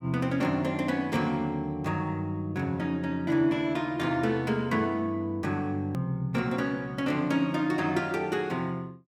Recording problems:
click at an edit; at 6 s

